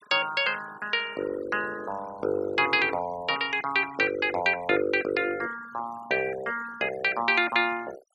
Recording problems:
denoising artefacts; signal-to-artefact ratio 18 dB

